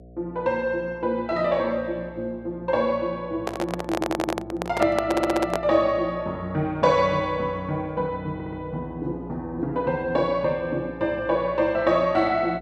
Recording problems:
electrical hum; 60 Hz, harmonics up to 720 Hz, SNR 19 dB
handling noise; from 3.5 to 5.5 s; peak +2 dB vs average level
audio stuttering; at 4 s, at 5 s and at 8.5 s

